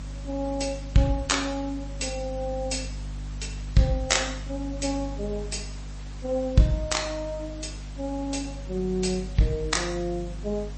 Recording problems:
lossy compression; MP3, log-spectral distance 5 dB, nothing above 8.2 kHz
hum; 50 Hz, harmonics up to 300 Hz, SNR 10 dB
background hiss; slope -3 dB per octave, SNR 20 dB

